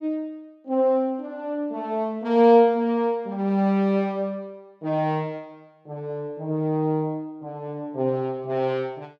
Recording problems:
none

